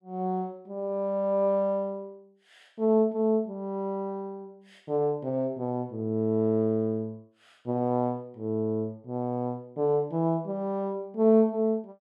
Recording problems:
none

